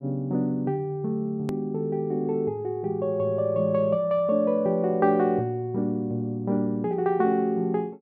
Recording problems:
click at an edit; at 1.5 s

